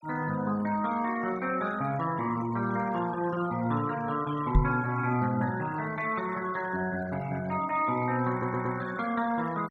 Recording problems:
denoising artefacts; signal-to-artefact ratio 17 dB
microphone thump; at 4.5 s; peak +9 dB vs average level
stutter; at 8.5 s

